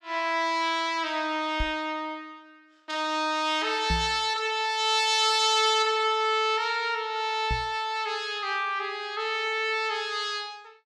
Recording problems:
microphone bump; at 1.5 s, at 4 s and at 7.5 s; peak -1 dB vs average level

